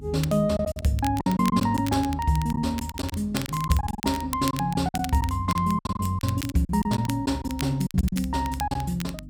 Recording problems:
mains hum; 50 Hz, harmonics up to 300 Hz, SNR 17 dB
crackle; vinyl, SNR 14 dB
lost packets; 11% of the sound replaced, filled with silence

